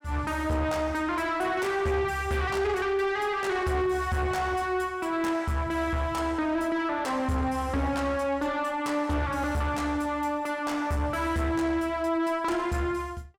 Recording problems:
distorted audio; soft clipping, signal-to-distortion ratio 11 dB

